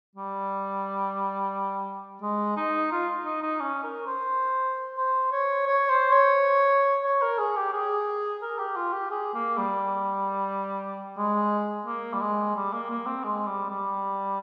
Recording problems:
none

